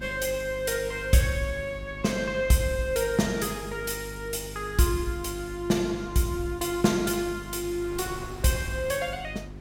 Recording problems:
electrical hum; 50 Hz, harmonics up to 400 Hz, SNR 14 dB
wind noise; below 670 Hz, SNR 21 dB

